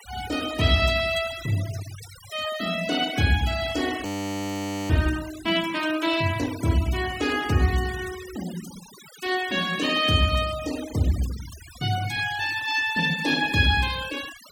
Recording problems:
denoising artefacts; signal-to-artefact ratio 14 dB
frozen audio; at 4 s for 1 s

